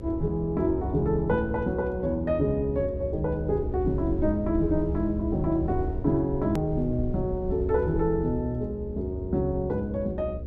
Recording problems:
mains hum; 60 Hz, harmonics up to 540 Hz, SNR 12 dB
low-frequency rumble; below 74 Hz, SNR 9 dB
click at an edit; at 6.5 s

